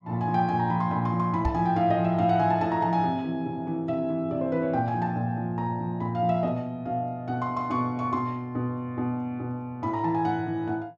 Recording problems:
microphone thump; at 1.5 s; peak +2 dB vs average level

